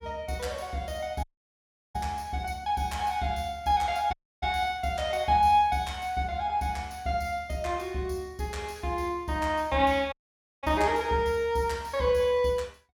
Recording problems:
audio cutting out; at 1 s for 0.5 s, at 4 s and at 10 s for 0.5 s

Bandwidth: 18 kHz